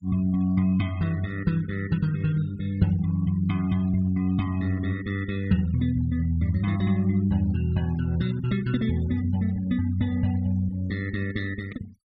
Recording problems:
denoising artefacts; signal-to-artefact ratio 22 dB

